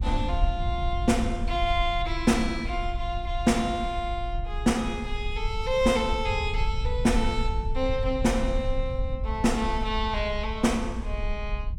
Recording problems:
rumble; below 64 Hz, SNR 5 dB

